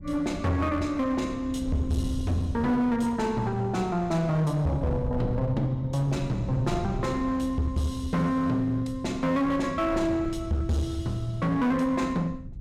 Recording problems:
distortion; hard clipping, uneven, signal-to-distortion ratio 10 dB
wind on the microphone; below 140 Hz, SNR 12 dB

